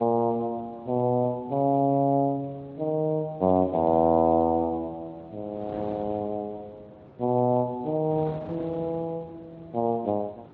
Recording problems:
lossy codec; Speex, log-spectral distance 2 dB, nothing above 4 kHz
wind on the microphone; below 620 Hz, SNR 21 dB

